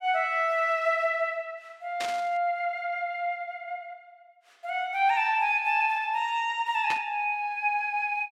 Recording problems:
burst of static; at 2 s and at 7 s; peak -3 dB vs average level

